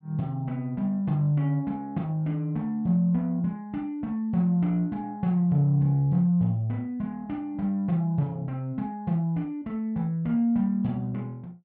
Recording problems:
none

